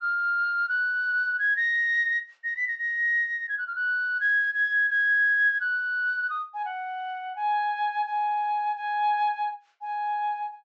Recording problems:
treble missing; nothing above 8 kHz

